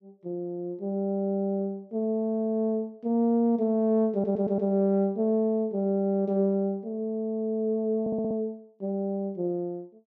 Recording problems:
audio stuttering; at 4 s and at 8 s

